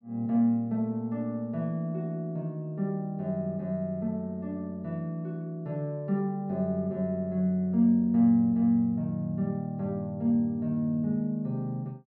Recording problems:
none

